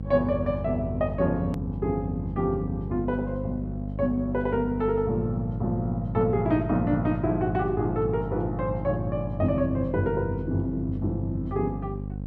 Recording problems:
hum; 50 Hz, harmonics up to 550 Hz, SNR 7 dB
hard cut with a click; at 1.5 s

